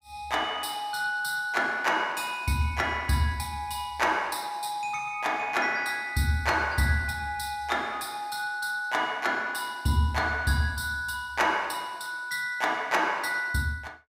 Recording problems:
none

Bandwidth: 15.5 kHz